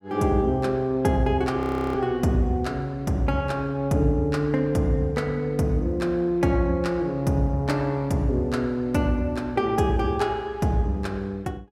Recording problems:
frozen audio; at 1.5 s

